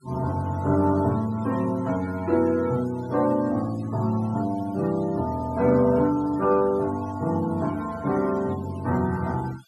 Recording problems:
denoising artefacts; signal-to-artefact ratio 22 dB

